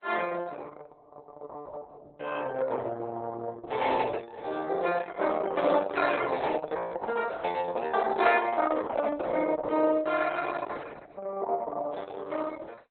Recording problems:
lossy compression; MP3, then Opus, log-spectral distance 4 dB, nothing above 4 kHz

